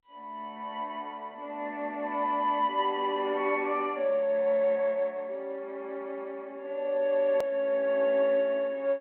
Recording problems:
telephone audio; 240 Hz to 3.3 kHz, G.711
click at an edit; at 7.5 s

